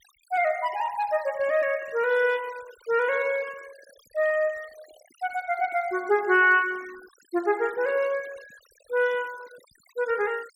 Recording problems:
noise reduction artefacts; signal-to-artefact ratio 22 dB

